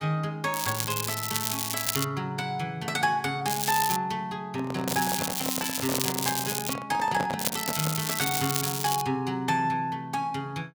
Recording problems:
crackle; 4 times, first at 0.5 s; loose cable, SNR 0 dB
microphone handling noise; from 4.5 to 8 s; peak +2 dB vs average level

